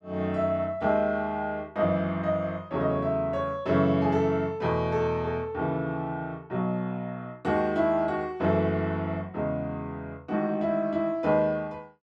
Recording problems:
none

